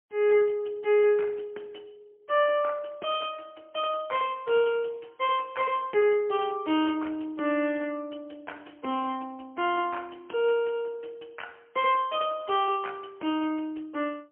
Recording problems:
phone line; 260 Hz to 3.2 kHz, AMR-NB, then MP3

